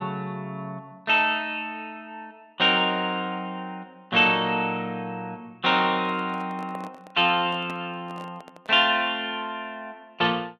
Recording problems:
microphone handling noise; from 6 to 9 s; peak -12 dB vs average level

